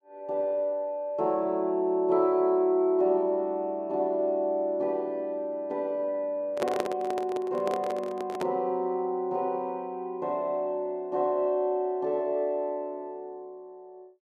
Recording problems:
handling noise; from 6.5 to 8.5 s; peak +2 dB vs average level

